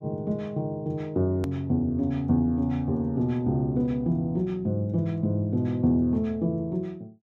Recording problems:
hard cut with a click; at 1.5 s

